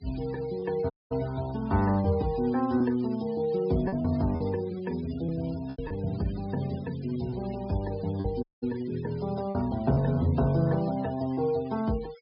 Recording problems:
treble cut off; nothing above 5.5 kHz
noise reduction artefacts; signal-to-artefact ratio 21 dB
packet loss; 3% of the sound replaced, filled with repeated pitch periods
audio cutting out; at 1 s and at 8.5 s

